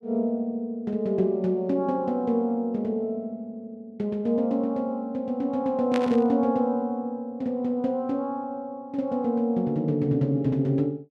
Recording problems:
burst of static; at 6 s; peak -2 dB vs average level

